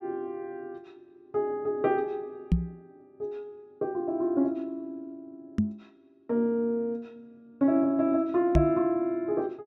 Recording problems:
microphone thump; at 2.5 s, at 5.5 s and at 8.5 s; peak +8 dB vs average level

